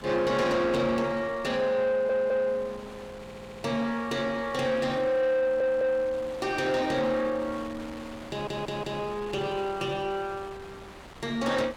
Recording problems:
distortion; soft clipping, signal-to-distortion ratio 11 dB
wind noise; below 2.3 kHz, SNR 17 dB
stutter; 4 times, first at 2 s

